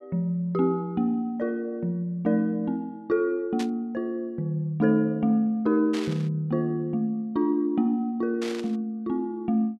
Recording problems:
static burst; at 3.5 s, at 6 s and at 8.5 s; peak -6 dB vs average level

